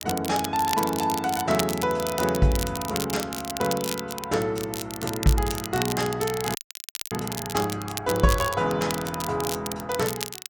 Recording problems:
crackle; vinyl, SNR 7 dB
audio freezing; at 6.5 s for 0.5 s

